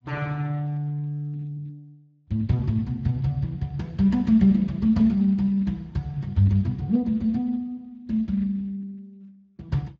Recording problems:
lossy compression; Speex, log-spectral distance 2 dB, nothing above 16 kHz

